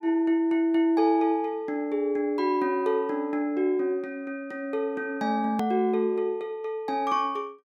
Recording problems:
edit click; at 5.5 s

